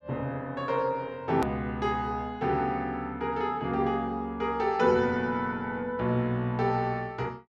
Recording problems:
hard cut with a click; at 1.5 s

